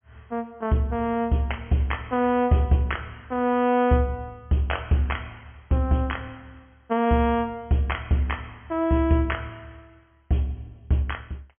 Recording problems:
treble cut off; nothing above 3.3 kHz

